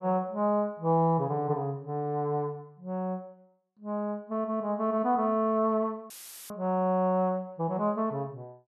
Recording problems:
dropout; at 6 s; filled with static

